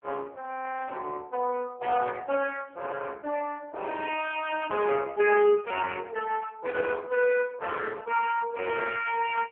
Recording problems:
phone line; 320 Hz to 3.2 kHz, AMR-NB

